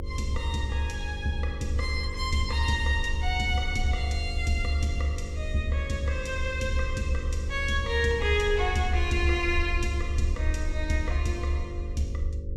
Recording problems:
mains hum; 50 Hz, harmonics up to 550 Hz, SNR 13 dB
rumble; below 74 Hz, SNR 4 dB

